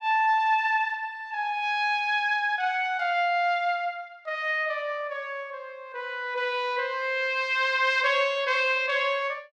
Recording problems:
none

